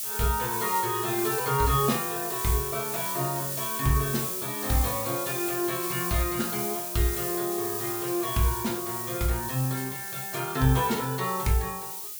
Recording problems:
background hiss; SNR 2 dB

